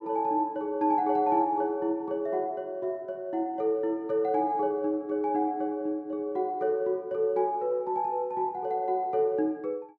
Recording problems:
none

